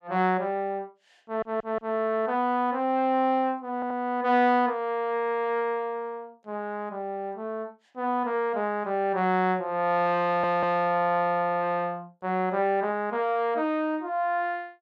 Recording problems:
audio stuttering; at 1 s, at 3.5 s and at 10 s

